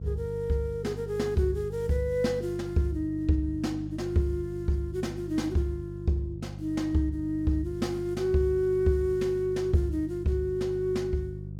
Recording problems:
hum; 50 Hz, harmonics up to 350 Hz, SNR 10 dB

